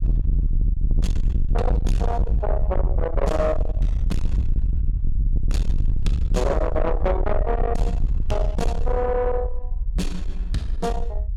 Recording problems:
distorted audio; soft clipping, signal-to-distortion ratio 6 dB
rumble; below 68 Hz, SNR -1 dB

